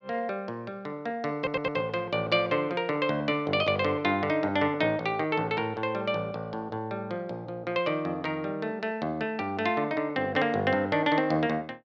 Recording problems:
audio stuttering; at 1.5 s

